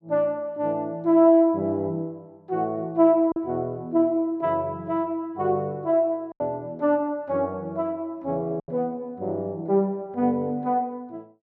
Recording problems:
lost packets; 1.8% of the sound replaced, filled with silence

